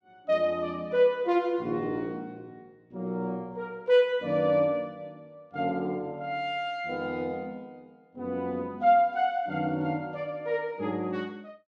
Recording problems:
none

